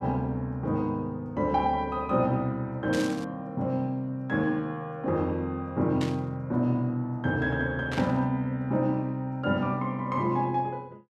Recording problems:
static burst; at 3 s, at 6 s and at 8 s; peak -4 dB vs average level

